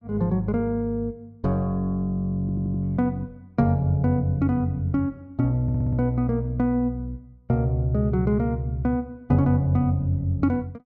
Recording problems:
audio stuttering; at 2.5 s and at 5.5 s

